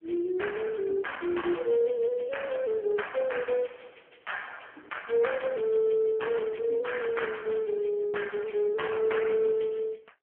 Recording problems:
telephone audio; 170 Hz to 3.3 kHz, AMR-NB

